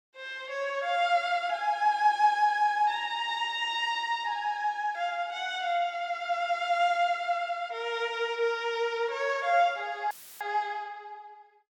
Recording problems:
audio cutting out; at 10 s; filled with static

